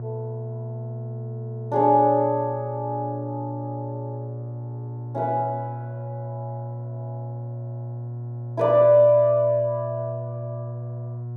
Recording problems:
hum; 60 Hz, harmonics up to 720 Hz, SNR 11 dB

